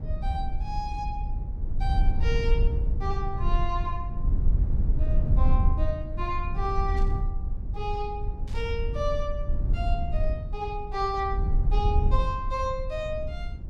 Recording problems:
low-frequency rumble; below 68 Hz, SNR -4 dB
burst of static; at 7 s and at 8.5 s; peak -14 dB vs average level

